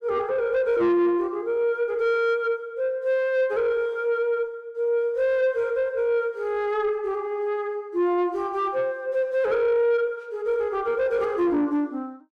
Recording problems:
distorted audio; soft clipping, signal-to-distortion ratio 11 dB

